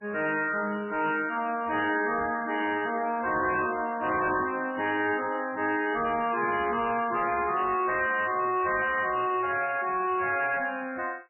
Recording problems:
codec artefacts; MP3, then MP3, log-spectral distance 5 dB, nothing above 2.6 kHz
distortion; soft clipping, signal-to-distortion ratio 11 dB

